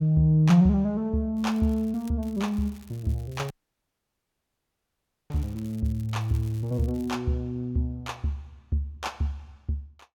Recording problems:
crackle; at 1.5 s and from 2 to 7 s; loose cable, SNR 27 dB
audio cutting out; at 3.5 s for 2 s

